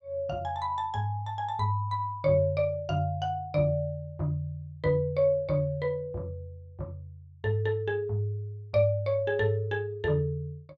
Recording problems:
none

